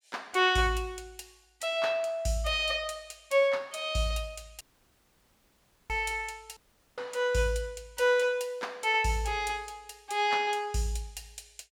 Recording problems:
dropout; at 4.5 s for 1.5 s and at 6.5 s

